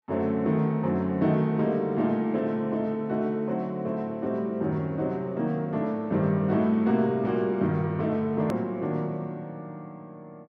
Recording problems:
hard cut with a click; at 8.5 s

